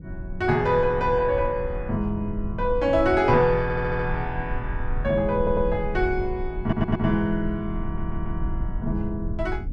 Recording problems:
low-frequency rumble; below 80 Hz, SNR 9 dB
audio stuttering; 4 times, first at 3.5 s

